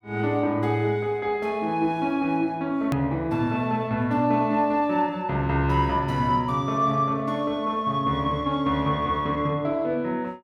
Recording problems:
hard cut with a click; at 3 s

